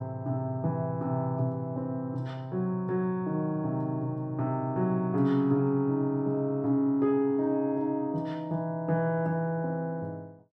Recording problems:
none

